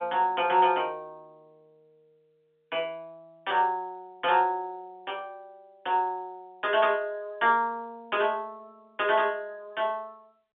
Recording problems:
telephone audio; 260 Hz to 3.5 kHz, G.711

